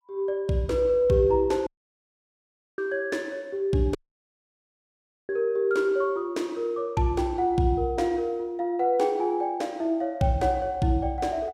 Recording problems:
audio cutting out; at 1.5 s for 1 s and at 4 s for 1.5 s

